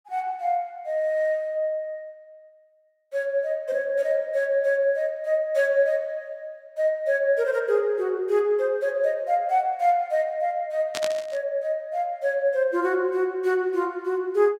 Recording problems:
static burst; at 11 s; peak -2 dB vs average level

